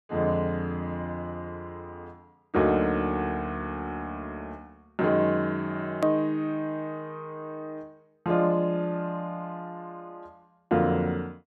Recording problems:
click at an edit; at 6 s

